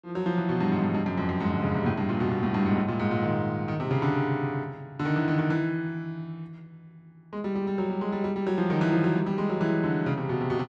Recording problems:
none

